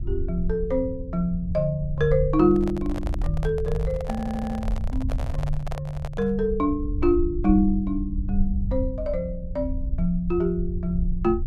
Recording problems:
rumble; below 72 Hz, SNR 6 dB
handling noise; from 2.5 to 6.5 s; peak -4 dB vs average level
audio stuttering; at 4 s

